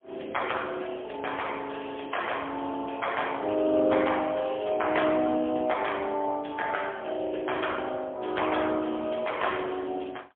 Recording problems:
phone line; 220 Hz to 3.4 kHz, AMR-NB, then MP3

